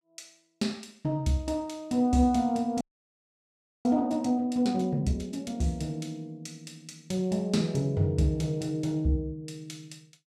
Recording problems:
frozen audio; at 3 s for 1 s

